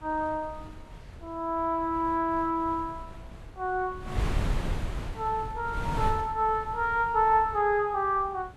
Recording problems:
wind on the microphone; below 170 Hz, SNR 10 dB

